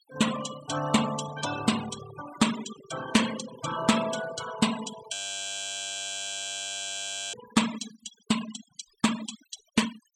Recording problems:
noise reduction artefacts; signal-to-artefact ratio 9 dB
audio freezing; at 5 s for 2 s

